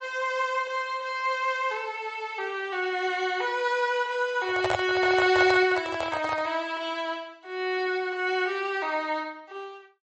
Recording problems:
lossy codec; MP3, log-spectral distance 2 dB, nothing above 7.3 kHz
microphone handling noise; from 4.5 to 6.5 s; peak +3 dB vs average level

